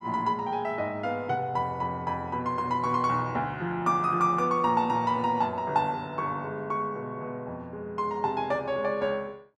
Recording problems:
none

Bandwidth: 12 kHz